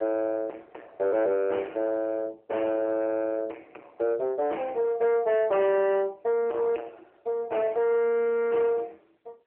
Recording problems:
phone line; 300 Hz to 3.3 kHz, AMR-NB
distortion; soft clipping, signal-to-distortion ratio 9 dB

